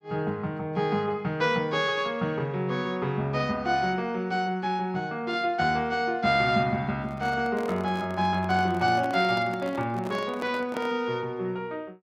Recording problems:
handling noise; from 7 to 11 s; peak -5 dB vs average level

